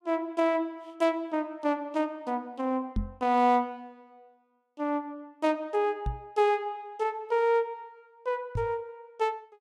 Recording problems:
microphone thump; at 3 s, at 6 s and at 8.5 s; peak +2 dB vs average level

